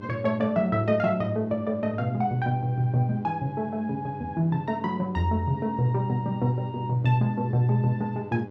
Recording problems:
hum; 50 Hz, harmonics up to 1.5 kHz, SNR 16 dB

